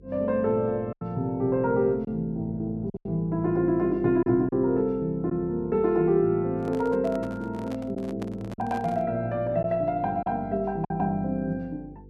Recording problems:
hum; 50 Hz, harmonics up to 500 Hz, SNR 21 dB
packet loss; 4% of the sound replaced, filled with silence
microphone handling noise; from 6.5 to 9 s; peak -8 dB vs average level

